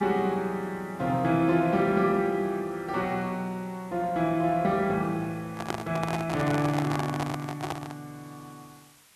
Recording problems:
background hiss; slope +1 dB per octave, SNR 27 dB
handling noise; from 5.5 to 8 s; peak +1 dB vs average level

